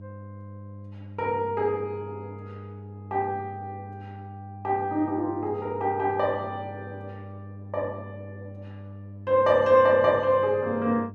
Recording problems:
hum; 50 Hz, harmonics up to 400 Hz, SNR 17 dB

